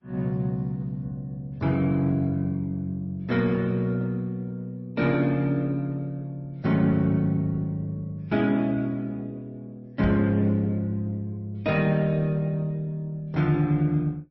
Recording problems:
lossy codec; Opus, then MP3, log-spectral distance 2 dB, nothing above 5.5 kHz
microphone thump; at 10 s; peak +1 dB vs average level

